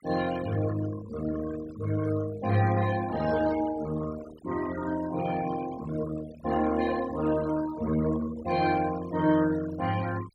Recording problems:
denoising artefacts; signal-to-artefact ratio 14 dB

